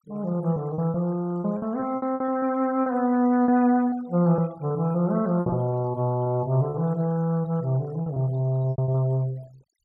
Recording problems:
noise reduction artefacts; signal-to-artefact ratio 26 dB
lost packets; 10% of the sound replaced, filled with repeated pitch periods

